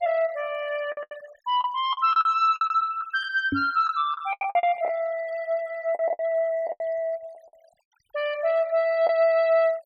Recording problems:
denoising artefacts; signal-to-artefact ratio 25 dB
lost packets; 10% of the sound replaced, filled with the last packet
knock on the microphone; at 3.5 s; peak +1 dB vs average level

